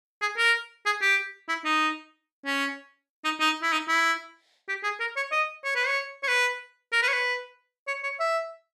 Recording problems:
none

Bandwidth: 14.5 kHz